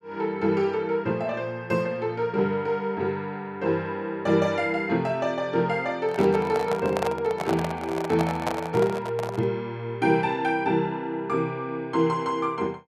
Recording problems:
handling noise; from 6 to 9.5 s; peak +2 dB vs average level

